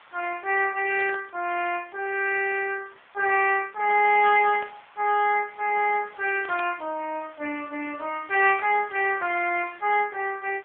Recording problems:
phone line; 320 Hz to 3.3 kHz, AMR-NB
hiss; SNR 27 dB
static burst; 4 times, first at 1 s; peak -10 dB vs average level

